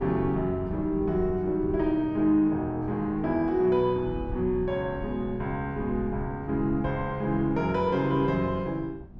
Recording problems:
wind noise; below 130 Hz, SNR 15 dB

